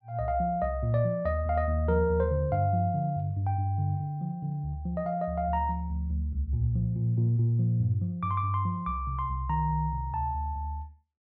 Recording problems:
treble missing; nothing above 8 kHz

